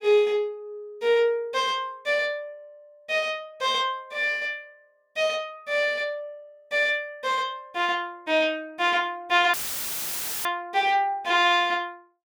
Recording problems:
audio cutting out; at 9.5 s for 1 s; filled with static

